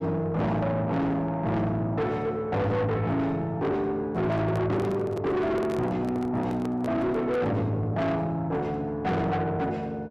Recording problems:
distortion; soft clipping, signal-to-distortion ratio 7 dB
handling noise; from 4 to 7.5 s; peak 0 dB vs average level

